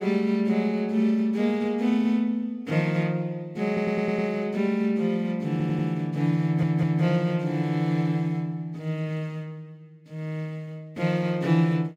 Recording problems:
stutter; at 3.5 s, at 5.5 s and at 6.5 s

